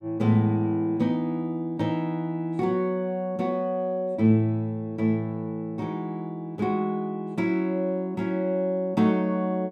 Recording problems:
none

